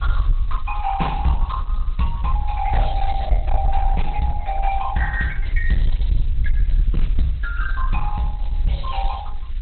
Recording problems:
codec artefacts; Opus, log-spectral distance 6 dB, nothing above 4.1 kHz
distorted audio; hard clipping, uneven, signal-to-distortion ratio 11 dB
background hiss; SNR 27 dB
rumble; below 52 Hz, SNR -1 dB

